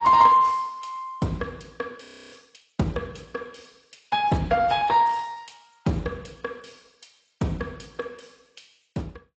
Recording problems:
lossy codec; Speex, then AAC, log-spectral distance 7 dB
frozen audio; at 2 s

